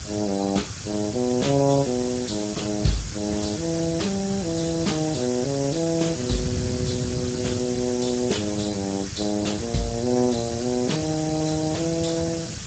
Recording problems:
codec artefacts; Speex, log-spectral distance 16 dB, nothing above 7.6 kHz
hiss; SNR 9 dB
wind noise; below 190 Hz, SNR 10 dB

